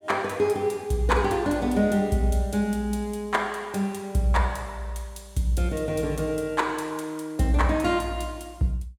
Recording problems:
none

